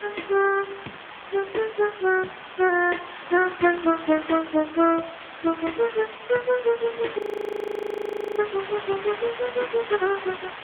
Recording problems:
telephone audio; 190 Hz to 3.3 kHz, AMR-NB
hiss; SNR 13 dB
crackle; at 5.5 s and from 7 to 9 s; loose cable, SNR 27 dB
audio freezing; at 7 s for 1 s

